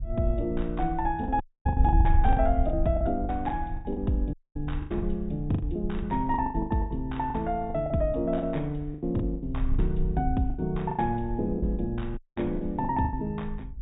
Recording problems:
treble missing; nothing above 4 kHz
wind noise; below 70 Hz, SNR 5 dB
lost packets; 14% of the sound replaced, filled with the last packet
dropout; at 1.5 s, at 4.5 s and at 12 s

